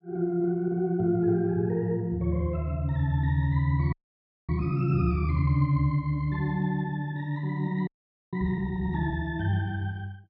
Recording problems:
audio freezing; at 4 s for 0.5 s and at 8 s

